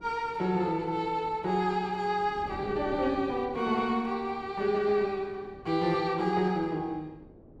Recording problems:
wind on the microphone; below 410 Hz, SNR 19 dB

